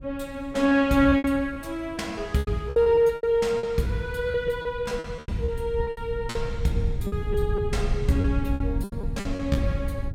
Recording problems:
low-frequency rumble; below 110 Hz, SNR 8 dB
packet loss; 14% of the sound replaced, filled with repeated pitch periods

